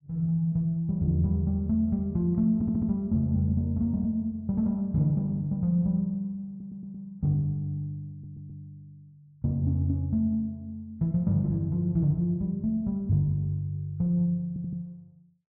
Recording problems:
stutter; 4 times, first at 2.5 s

